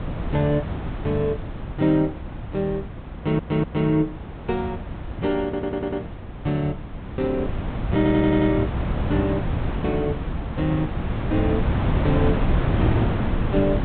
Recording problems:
treble cut off; nothing above 4 kHz
wind on the microphone; below 280 Hz, SNR 3 dB
audio stuttering; at 3 s, at 5.5 s and at 8 s

